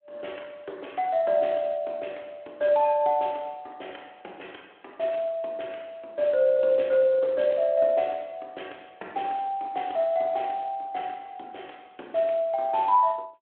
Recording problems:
phone line; 280 Hz to 3.4 kHz, Speex

